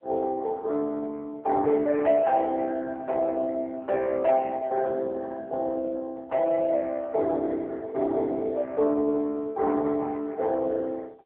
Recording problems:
telephone audio; 340 Hz to 2.7 kHz, AMR-NB

